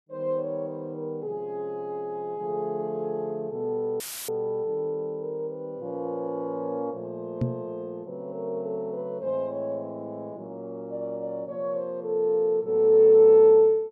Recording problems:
dropout; at 4 s; filled with static
knock on the microphone; at 7.5 s; peak +2 dB vs average level

